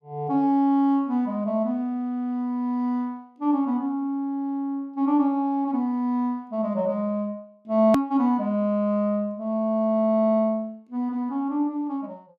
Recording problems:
click at an edit; at 8 s

